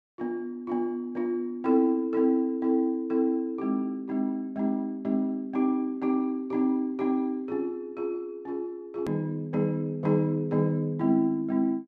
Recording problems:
click at an edit; at 9 s

